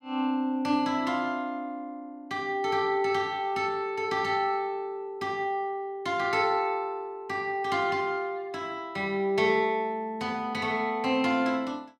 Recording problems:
none

